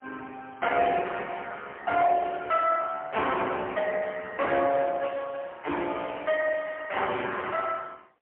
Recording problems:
telephone audio; 300 Hz to 3.2 kHz, AMR-NB, then MP3

